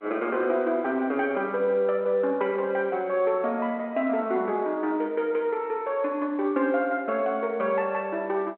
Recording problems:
phone line; 260 Hz to 3.5 kHz, G.711

